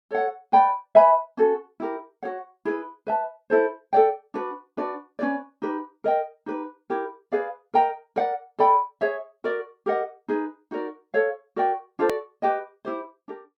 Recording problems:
click at an edit; at 12 s

